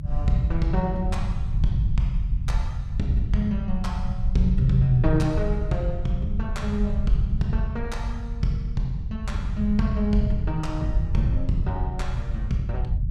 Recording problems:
rumble; below 88 Hz, SNR 1 dB

